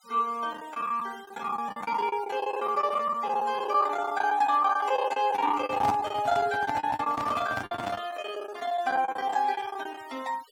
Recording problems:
denoising artefacts; signal-to-artefact ratio 22 dB
lost packets; 18% of the sound replaced, filled with the last packet
microphone handling noise; from 5.5 to 8 s; peak 0 dB vs average level

